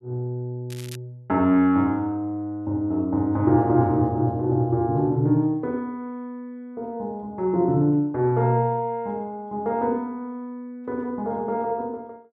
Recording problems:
crackling; at 0.5 s; loose cable, SNR 20 dB

